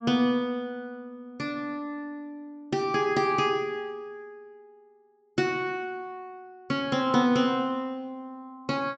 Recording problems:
treble missing; nothing above 8 kHz

